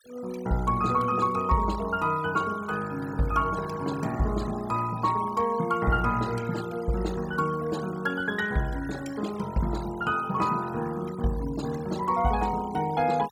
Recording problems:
denoising artefacts; signal-to-artefact ratio 18 dB

